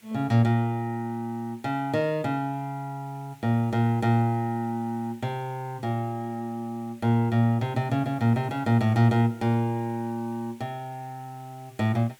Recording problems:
background hiss; SNR 29 dB

